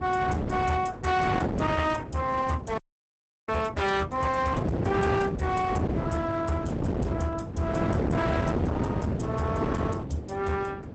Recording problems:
codec artefacts; Opus, log-spectral distance 3 dB, nothing above 8 kHz
distorted audio; hard clipping, uneven, signal-to-distortion ratio 11 dB
electrical hum; 50 Hz, harmonics up to 900 Hz, SNR 18 dB
wind noise; below 470 Hz, SNR 2 dB
audio freezing; at 3 s for 0.5 s

